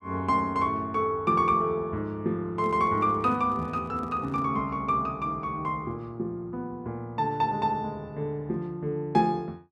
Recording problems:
microphone handling noise; from 2.5 to 4.5 s; peak -10 dB vs average level

